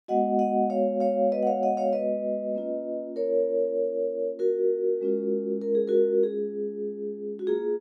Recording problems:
none

